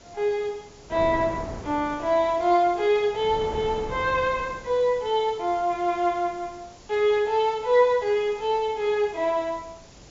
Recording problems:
treble missing; nothing above 7.3 kHz
background hiss; SNR 27 dB
wind on the microphone; below 640 Hz, SNR 18 dB

